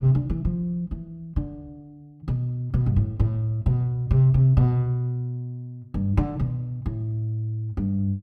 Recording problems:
none

